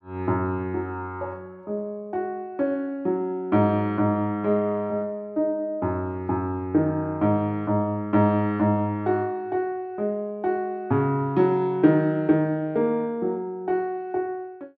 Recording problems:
none

